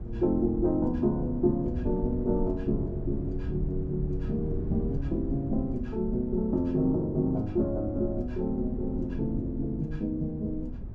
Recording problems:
rumble; below 98 Hz, SNR 8 dB

